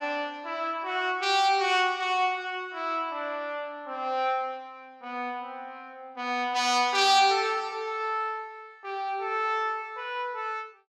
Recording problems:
none

